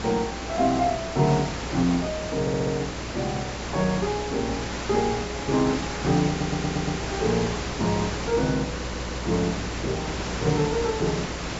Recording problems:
low-pass filter; nothing above 8 kHz
hum; 60 Hz, harmonics up to 600 Hz, SNR 12 dB
background hiss; slope -4 dB per octave, SNR 5 dB
audio stuttering; at 2.5 s, at 6.5 s and at 9 s

